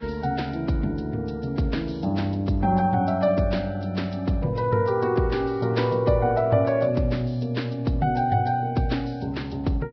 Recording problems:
lossy codec; Vorbis, log-spectral distance 3 dB, nothing above 5.5 kHz

